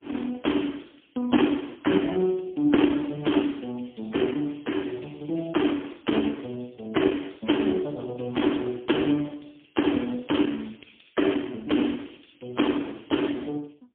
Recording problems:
phone line; 190 Hz to 3.4 kHz, AMR-NB, then MP3

